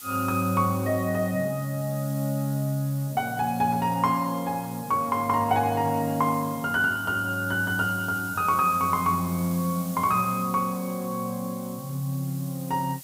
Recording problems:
hiss; slope +2 dB per octave, SNR 15 dB

